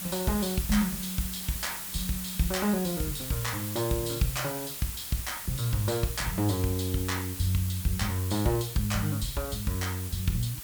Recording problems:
background hiss; slope +1 dB per octave, SNR 6 dB

